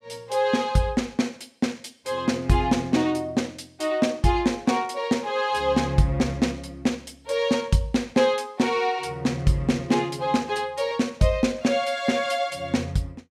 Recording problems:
none

